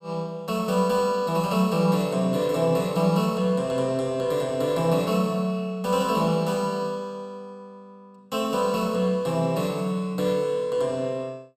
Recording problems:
none

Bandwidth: 15.5 kHz